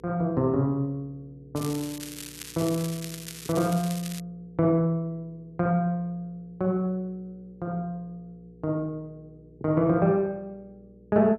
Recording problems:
hum; 60 Hz, harmonics up to 480 Hz, SNR 26 dB
crackle; from 1.5 to 4 s; loose cable, SNR 11 dB

